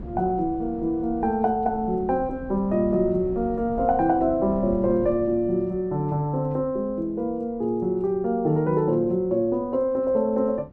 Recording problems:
wind on the microphone; below 260 Hz, SNR 17 dB

